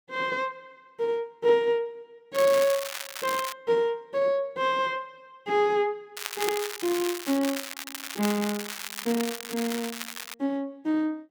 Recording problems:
crackle; from 2.5 to 3.5 s and from 6 to 10 s; loose cable, SNR 7 dB

